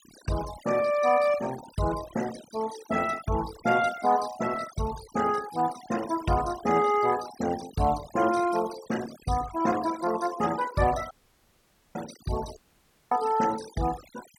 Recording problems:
noise reduction artefacts; signal-to-artefact ratio 14 dB
dropout; at 11 s for 1 s and at 13 s for 0.5 s

